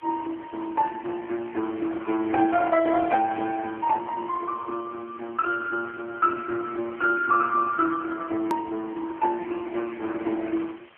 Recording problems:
phone line; 240 Hz to 2.3 kHz, AMR-NB
hiss; SNR 27 dB
hard cut with a click; at 8.5 s

